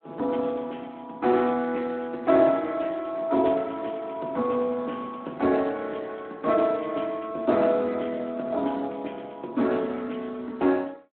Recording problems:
phone line; 190 Hz to 3.4 kHz, Speex

